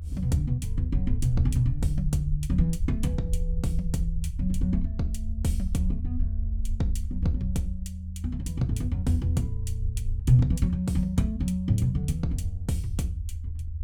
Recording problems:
low-frequency rumble; below 80 Hz, SNR 5 dB

